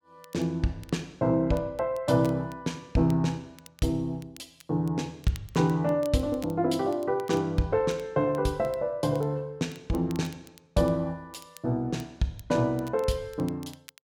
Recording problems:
crackle; vinyl, SNR 25 dB

